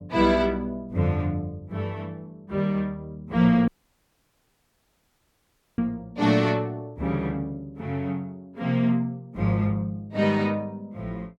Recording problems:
dropout; at 3.5 s for 2 s

